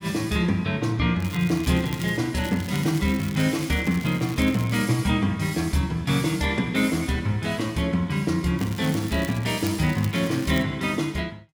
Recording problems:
crackling; at 1 s, from 2.5 to 5 s and from 8.5 to 11 s; loose cable, SNR 17 dB

